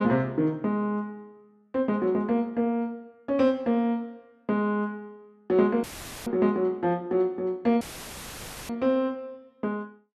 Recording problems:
dropout; at 6 s and at 8 s for 1 s; filled with static

